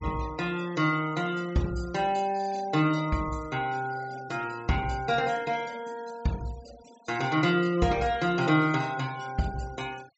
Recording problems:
low-pass filter; nothing above 7.6 kHz
noise reduction artefacts; signal-to-artefact ratio 20 dB

